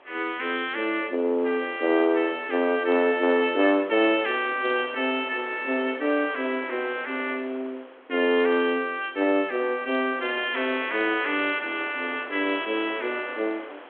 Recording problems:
phone line; 220 Hz to 3.4 kHz, G.726
wind on the microphone; below 1.9 kHz, SNR 18 dB

